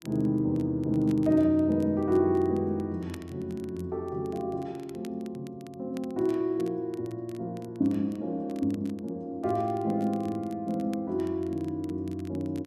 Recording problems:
crackling; vinyl, SNR 27 dB

